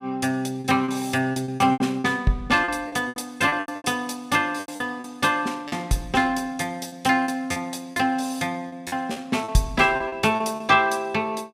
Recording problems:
packet loss; 12% of the sound replaced, filled with repeated pitch periods

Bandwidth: 15 kHz